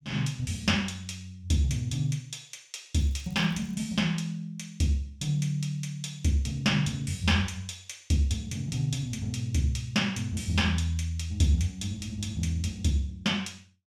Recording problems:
crackle; at 3 s; loose cable, SNR 29 dB

